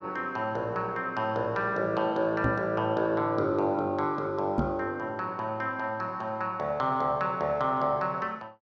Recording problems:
microphone bump; at 2.5 s and at 4.5 s; peak +4 dB vs average level

